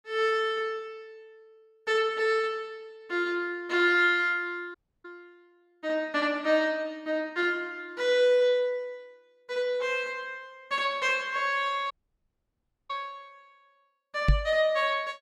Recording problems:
dropout; at 5 s and at 12 s for 1 s
microphone bump; at 14 s; peak +8 dB vs average level

